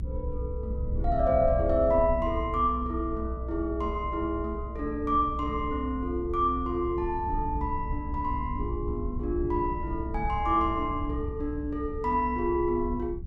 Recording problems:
rumble; below 84 Hz, SNR 7 dB

